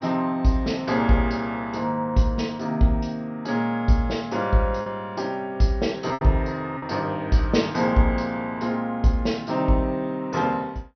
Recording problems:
low-pass filter; nothing above 5.8 kHz
packet loss; 1.6% of the sound replaced, filled with repeated pitch periods

